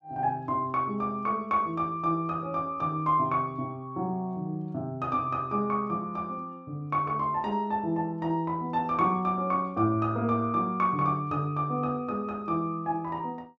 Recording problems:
none

